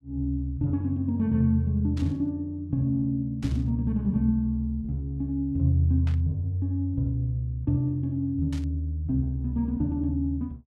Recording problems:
static burst; 4 times, first at 2 s; peak -13 dB vs average level

